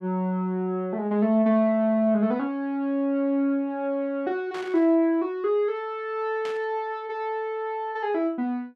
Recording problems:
static burst; at 4.5 s and at 6.5 s; peak -10 dB vs average level

